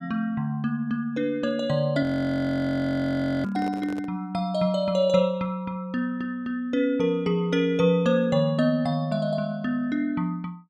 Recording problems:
audio freezing; at 2 s for 1.5 s
handling noise; at 3.5 s; peak -8 dB vs average level

